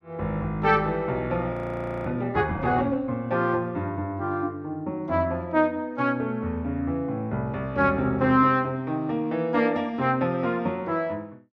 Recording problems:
audio freezing; at 1.5 s for 0.5 s

